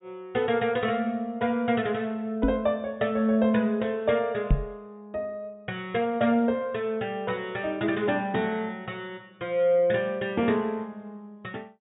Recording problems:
low-pass filter; nothing above 4 kHz
microphone thump; at 2.5 s and at 4.5 s; peak +7 dB vs average level

